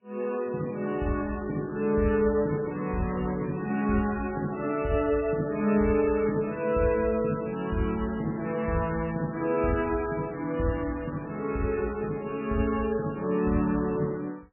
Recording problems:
codec artefacts; MP3, log-spectral distance 4 dB, nothing above 2.7 kHz

